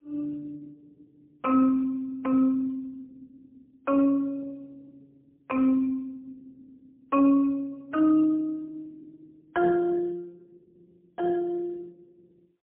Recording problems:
phone line; 190 Hz to 2.4 kHz, AMR-NB, then MP3

